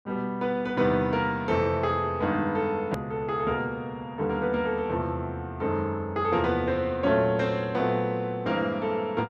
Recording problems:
click at an edit; at 3 s

